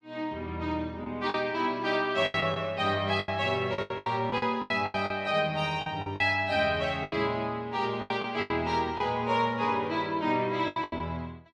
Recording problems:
lost packets; 11% of the sound replaced, filled with the last packet

